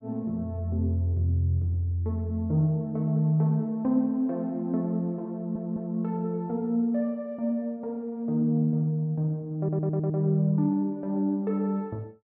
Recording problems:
audio stuttering; at 5.5 s and at 9.5 s

